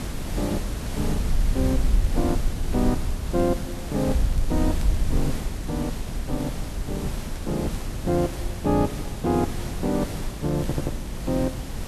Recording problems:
background hiss; slope -4 dB per octave, SNR 6 dB
wind noise; below 60 Hz, SNR 3 dB
crackling; vinyl, SNR 27 dB
stutter; at 11 s

